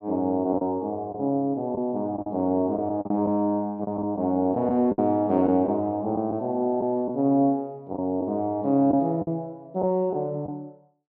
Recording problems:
lost packets; 6% of the sound replaced, filled with the last packet

